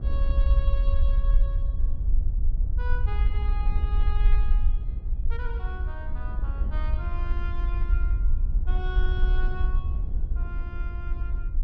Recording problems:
low-frequency rumble; below 54 Hz, SNR -13 dB
wind on the microphone; below 180 Hz, SNR 2 dB

